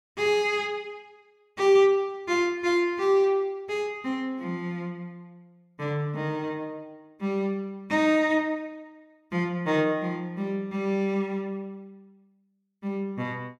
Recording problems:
none

